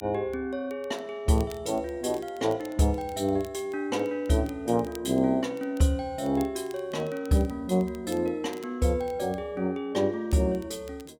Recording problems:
crackle; vinyl, SNR 25 dB

